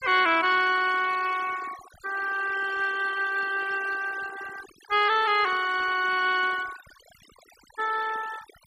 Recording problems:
noise reduction artefacts; signal-to-artefact ratio 15 dB

